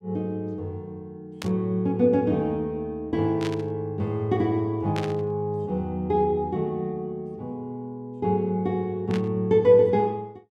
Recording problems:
static burst; 4 times, first at 1.5 s; peak -5 dB vs average level

